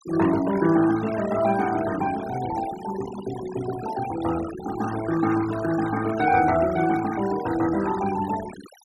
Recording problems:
noise reduction artefacts; signal-to-artefact ratio 13 dB

